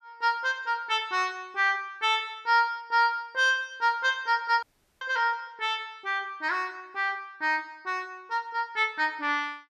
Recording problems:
dropout; at 4.5 s

